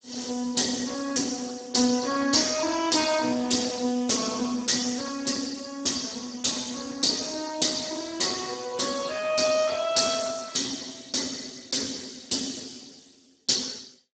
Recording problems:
lossy compression; Speex, log-spectral distance 8 dB, nothing above 7.6 kHz

